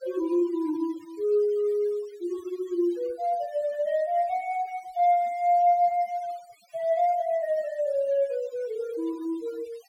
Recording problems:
denoising artefacts; signal-to-artefact ratio 25 dB

